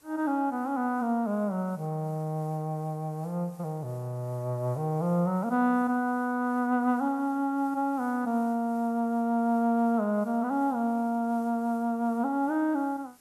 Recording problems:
hiss; SNR 29 dB

